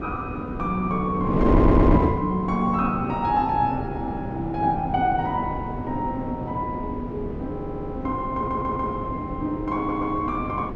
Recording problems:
wind noise; below 400 Hz, SNR 2 dB
audio stuttering; 4 times, first at 1.5 s

